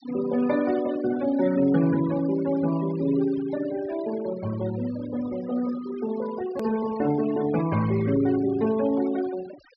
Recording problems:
treble missing; nothing above 5.5 kHz
noise reduction artefacts; signal-to-artefact ratio 16 dB
click at an edit; at 6.5 s

